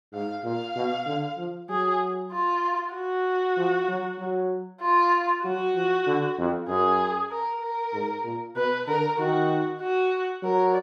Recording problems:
none

